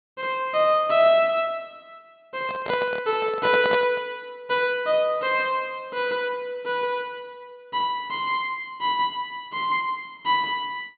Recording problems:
treble cut off; nothing above 4.6 kHz
handling noise; from 2.5 to 4 s; peak -1 dB vs average level

